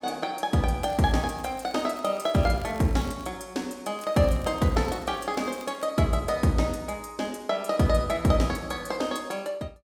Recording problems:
crackle; from 1 to 3.5 s and from 4 to 6 s; loose cable, SNR 25 dB

